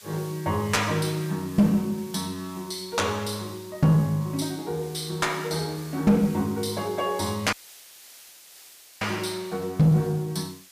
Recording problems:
distorted audio; soft clipping, signal-to-distortion ratio 11 dB
hiss; slope +2 dB per octave, SNR 20 dB
dropout; at 7.5 s for 1.5 s

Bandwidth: 15 kHz